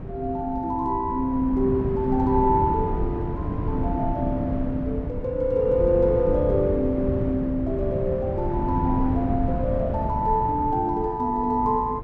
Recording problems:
wind noise; below 210 Hz, SNR 5 dB

